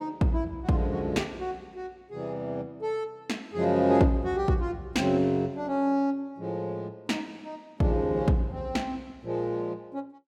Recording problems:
none

